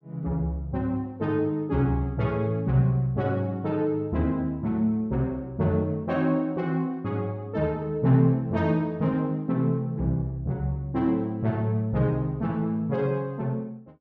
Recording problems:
none

